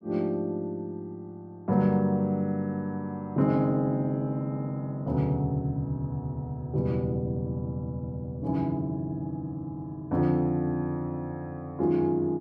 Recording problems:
none

